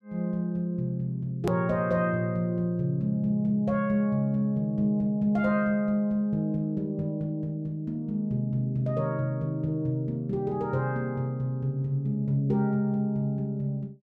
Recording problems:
hard cut with a click; at 1.5 s

